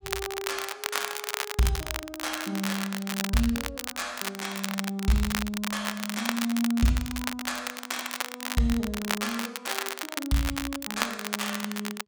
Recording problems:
crackle; vinyl, SNR 2 dB

